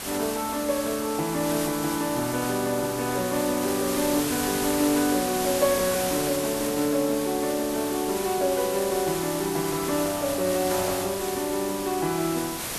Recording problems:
hiss; slope -2 dB per octave, SNR 5 dB

